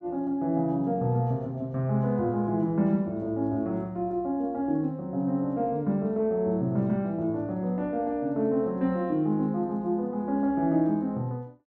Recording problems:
none

